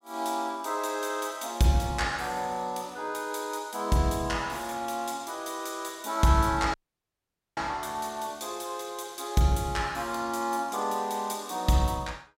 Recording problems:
audio cutting out; at 6.5 s for 1 s

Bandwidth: 16 kHz